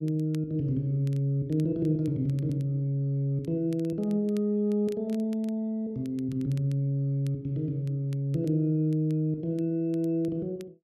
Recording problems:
crackling; vinyl, SNR 30 dB

